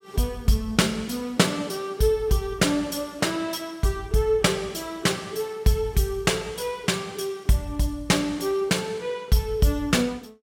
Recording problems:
none

